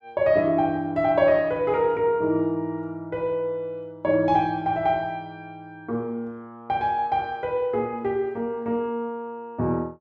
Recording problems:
none

